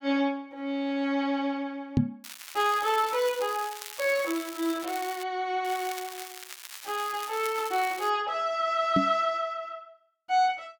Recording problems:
microphone bump; at 2 s and at 9 s; peak +8 dB vs average level
crackle; from 2 to 5 s and from 5.5 to 8 s; loose cable, SNR 12 dB

